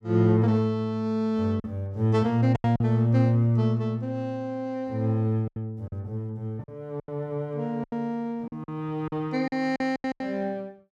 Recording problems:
lost packets; 8% of the sound replaced, filled with silence

